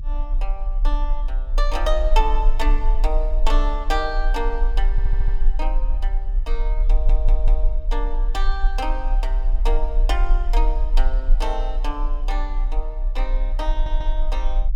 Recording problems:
low-frequency rumble; below 34 Hz, strongest tone 32 Hz, SNR -6 dB
audio stuttering; at 5 s, at 7 s and at 14 s

